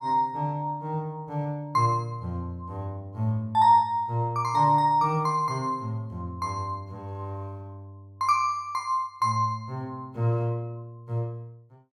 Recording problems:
none

